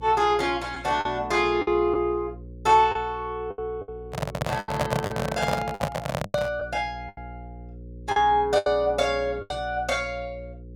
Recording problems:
hum; 60 Hz, harmonics up to 540 Hz, SNR 17 dB
lost packets; 9% of the sound replaced, filled with the last packet
microphone handling noise; from 4 to 6.5 s; peak +3 dB vs average level

